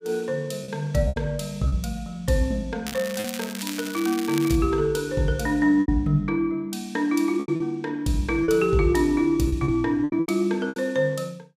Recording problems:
lost packets; 7% of the sound replaced, filled with repeated pitch periods
crackle; from 3 to 4.5 s; loose cable, SNR 11 dB

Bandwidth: 15.5 kHz